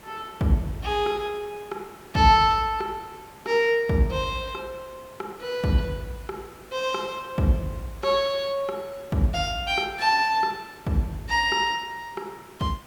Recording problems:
hiss; slope -4 dB per octave, SNR 23 dB

